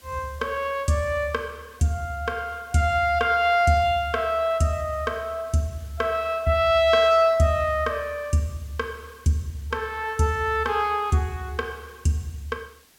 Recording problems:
background hiss; slope 0 dB per octave, SNR 28 dB

